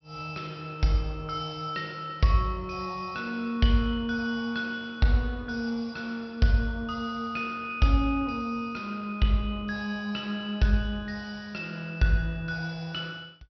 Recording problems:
treble missing; nothing above 5.8 kHz

